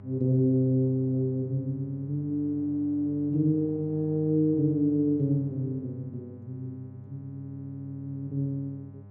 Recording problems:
electrical hum; 50 Hz, harmonics up to 800 Hz, SNR 19 dB

